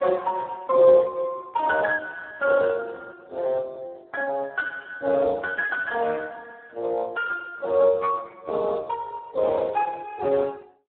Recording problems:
phone line; 320 Hz to 3.4 kHz, Speex

